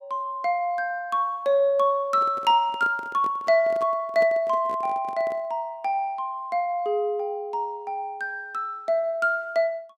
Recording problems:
handling noise; from 2 to 5.5 s; peak -9 dB vs average level

